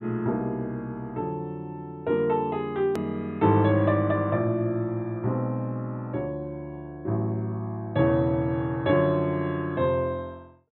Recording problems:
treble cut off; nothing above 4 kHz
hard cut with a click; at 3 s

